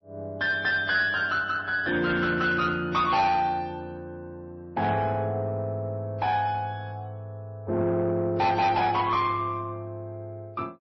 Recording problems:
codec artefacts; MP3, then AAC, log-spectral distance 2 dB, nothing above 5.2 kHz
distorted audio; soft clipping, signal-to-distortion ratio 11 dB

